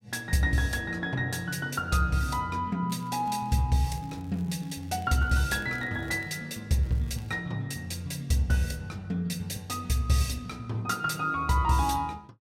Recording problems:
crackle; at 3 s, from 4 to 6.5 s and at 7 s; loose cable, SNR 28 dB

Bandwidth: 16 kHz